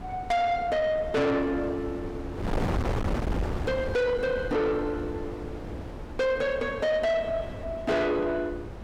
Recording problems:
distorted audio; soft clipping, signal-to-distortion ratio 7 dB
wind on the microphone; below 490 Hz, SNR 8 dB

